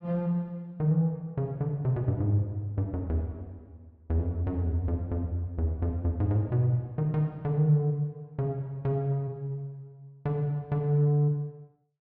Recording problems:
none

